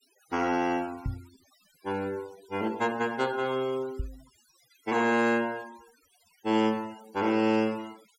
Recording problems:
denoising artefacts; signal-to-artefact ratio 21 dB
knock on the microphone; at 1 s and at 4 s; peak -1 dB vs average level

